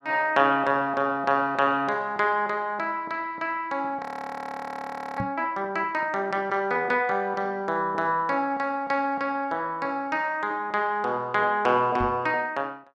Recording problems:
audio freezing; at 4 s for 1 s
microphone thump; at 5 s and at 12 s; peak -2 dB vs average level

